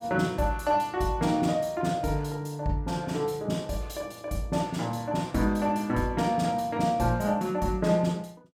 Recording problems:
none

